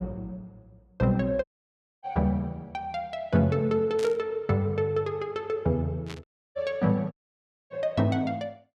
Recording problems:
dropout; at 1.5 s for 0.5 s, at 6 s and at 7 s for 0.5 s
static burst; at 4 s and at 6 s; peak -8 dB vs average level

